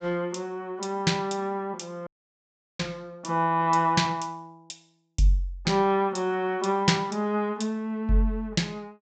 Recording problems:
low-pass filter; nothing above 8 kHz
audio cutting out; at 2 s for 0.5 s

